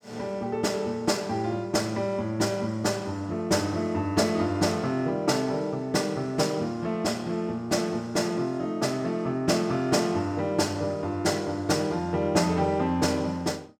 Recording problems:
none

